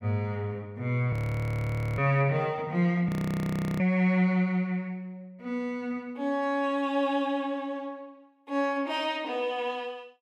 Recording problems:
audio freezing; at 1 s for 1 s and at 3 s for 0.5 s

